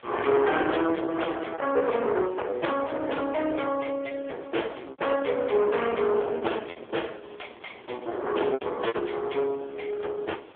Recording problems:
phone line; 280 Hz to 3.4 kHz, AMR-NB
distortion; soft clipping, signal-to-distortion ratio 9 dB
background hiss; SNR 28 dB
wind on the microphone; below 1 kHz, SNR 18 dB
packet loss; 6% of the sound replaced, filled with repeated pitch periods

